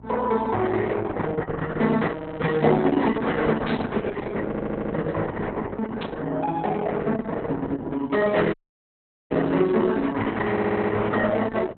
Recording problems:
lossy codec; Opus, log-spectral distance 4 dB, nothing above 4 kHz
hum; 60 Hz, harmonics up to 960 Hz, SNR 21 dB
audio stuttering; at 2 s, at 4.5 s and at 11 s
static burst; at 3.5 s and at 6 s; peak -4 dB vs average level
audio cutting out; at 8.5 s for 1 s

